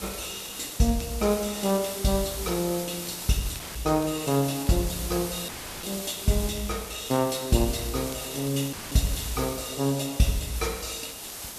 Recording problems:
background hiss; slope -1 dB per octave, SNR 8 dB
crackling; vinyl, SNR 25 dB
dropout; at 3.5 s, at 5.5 s and at 8.5 s

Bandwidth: 14 kHz